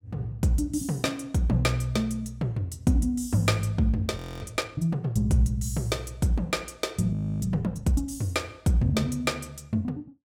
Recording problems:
frozen audio; at 4 s and at 7 s

